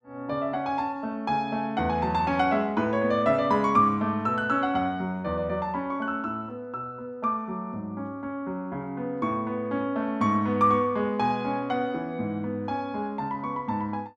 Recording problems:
none

